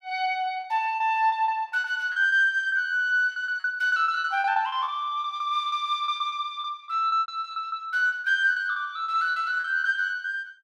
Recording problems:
lost packets; 16% of the sound replaced, filled with repeated pitch periods

